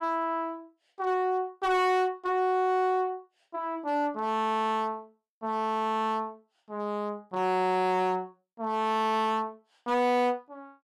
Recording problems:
distortion; hard clipping, uneven, signal-to-distortion ratio 11 dB

